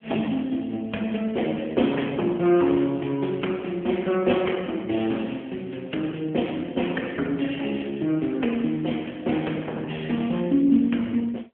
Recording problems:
telephone audio; 190 Hz to 3.3 kHz, AMR-NB

